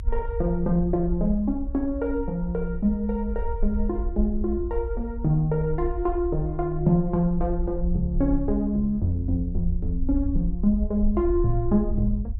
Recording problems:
rumble; below 58 Hz, SNR 6 dB

